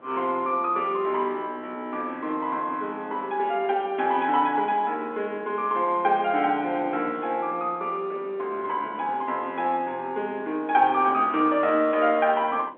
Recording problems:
telephone audio; 220 Hz to 3.6 kHz, G.711
wind noise; below 760 Hz, SNR 22 dB

